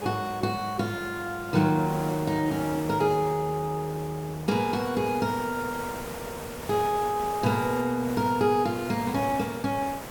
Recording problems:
background hiss; SNR 12 dB

